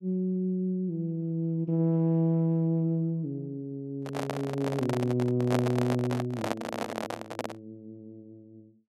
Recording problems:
handling noise; from 4 to 7.5 s; peak +3 dB vs average level

